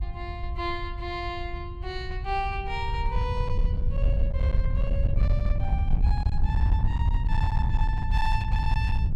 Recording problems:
distorted audio; hard clipping, signal-to-distortion ratio 11 dB
wind on the microphone; below 86 Hz, SNR -6 dB

